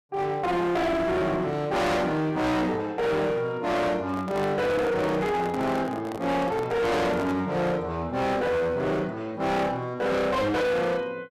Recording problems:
distorted audio; hard clipping, signal-to-distortion ratio 6 dB
microphone handling noise; from 4 to 7.5 s; peak -4 dB vs average level

